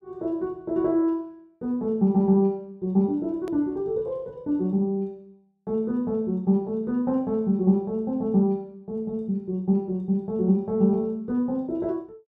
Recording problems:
edit click; at 3.5 s

